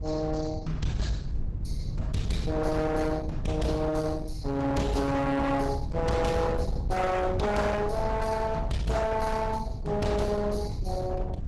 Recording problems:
codec artefacts; Opus, log-spectral distance 3 dB, nothing above 12 kHz
distorted audio; hard clipping, signal-to-distortion ratio 8 dB
wind noise; below 130 Hz, SNR 6 dB

